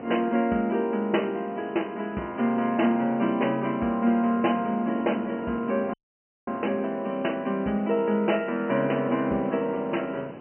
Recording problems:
telephone audio; 170 Hz to 3.1 kHz, G.711
background hiss; SNR 28 dB
wind on the microphone; below 690 Hz, SNR 18 dB
audio cutting out; at 6 s for 0.5 s

